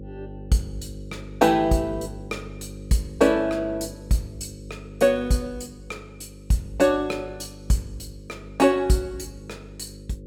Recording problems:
electrical hum; 50 Hz, harmonics up to 550 Hz, SNR 17 dB

